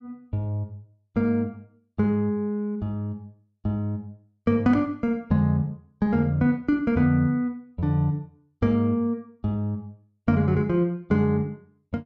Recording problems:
none

